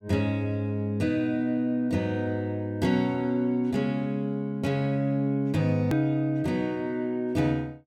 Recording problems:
edit click; at 6 s

